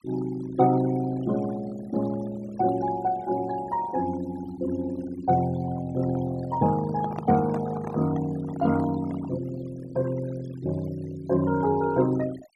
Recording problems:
noise reduction artefacts; signal-to-artefact ratio 17 dB
microphone handling noise; from 6 to 9.5 s; peak -4 dB vs average level

